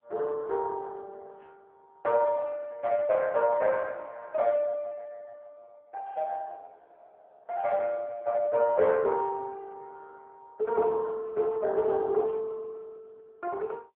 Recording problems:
phone line; 340 Hz to 2.1 kHz, AMR-NB

